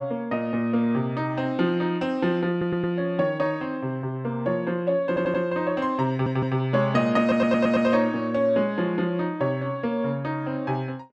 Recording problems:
audio stuttering; 4 times, first at 2.5 s

